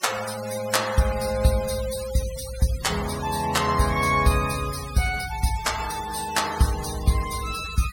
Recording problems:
denoising artefacts; signal-to-artefact ratio 11 dB

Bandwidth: 17 kHz